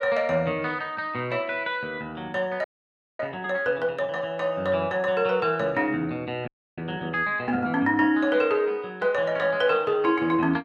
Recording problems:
audio freezing; at 2.5 s for 0.5 s and at 6.5 s

